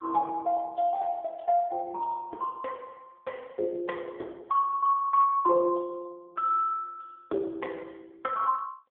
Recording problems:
phone line; 280 Hz to 3.4 kHz, AMR-NB

